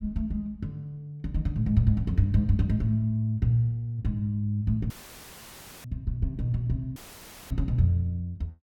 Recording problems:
audio cutting out; at 5 s for 1 s and at 7 s for 0.5 s; filled with static

